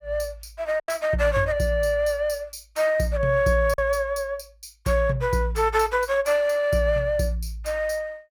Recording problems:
packet loss; 1.6% of the sound replaced, filled with silence

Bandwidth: 18 kHz